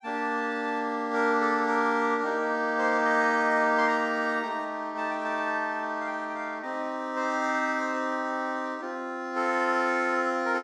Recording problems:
none

